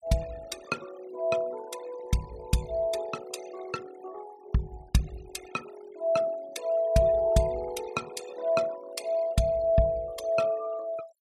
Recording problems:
denoising artefacts; signal-to-artefact ratio 18 dB

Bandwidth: 15 kHz